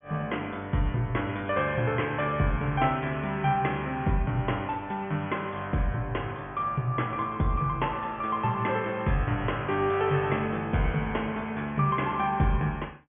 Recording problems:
treble missing; nothing above 3.3 kHz

